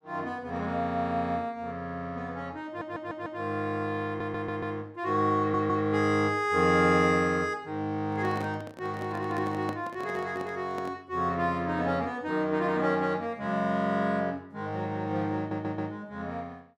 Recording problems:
audio stuttering; 4 times, first at 2.5 s
microphone handling noise; from 8 to 11 s; peak -5 dB vs average level

